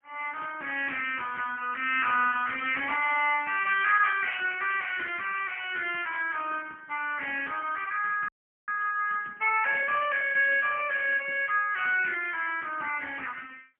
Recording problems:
telephone audio; 240 Hz to 3.2 kHz, AMR-NB, then MP3
audio freezing; at 8.5 s

